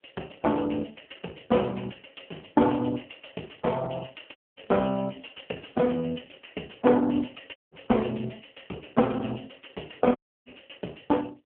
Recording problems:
phone line; 260 Hz to 3.9 kHz, AMR-NB
dropout; at 4.5 s, at 7.5 s and at 10 s

